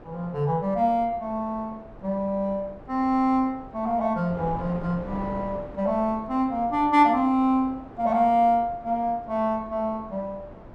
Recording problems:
wind noise; below 670 Hz, SNR 18 dB

